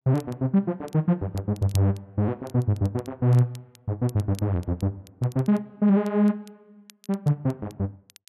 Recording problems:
crackling; vinyl, SNR 26 dB

